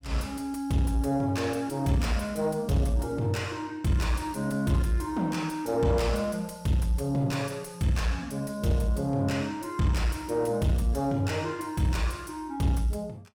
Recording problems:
distorted audio; soft clipping, signal-to-distortion ratio 11 dB

